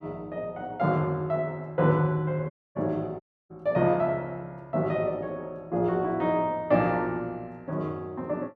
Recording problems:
audio cutting out; at 2.5 s and at 3 s

